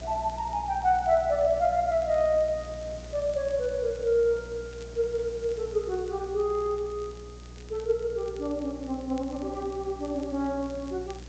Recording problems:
treble missing; nothing above 8 kHz
hum; 60 Hz, harmonics up to 540 Hz, SNR 17 dB
hiss; SNR 21 dB
crackling; vinyl, SNR 29 dB

